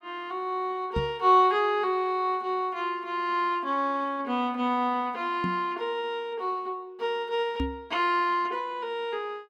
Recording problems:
knock on the microphone; at 1 s, at 5.5 s and at 7.5 s; peak +1 dB vs average level

